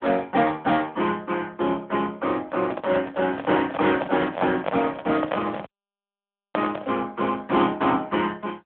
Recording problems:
phone line; 170 Hz to 3.8 kHz, AMR-NB
handling noise; from 2.5 to 7 s; peak +2 dB vs average level
dropout; at 5.5 s for 1 s

